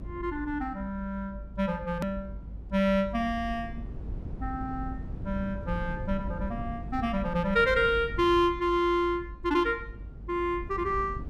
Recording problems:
low-frequency rumble; below 120 Hz, SNR 11 dB
click at an edit; at 2 s

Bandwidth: 14.5 kHz